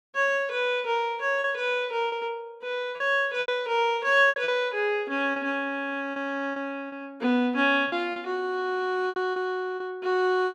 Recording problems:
lost packets; 7% of the sound replaced, filled with repeated pitch periods

